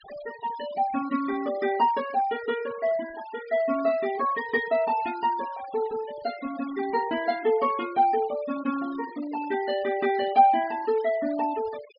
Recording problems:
treble cut off; nothing above 5.5 kHz
noise reduction artefacts; signal-to-artefact ratio 19 dB

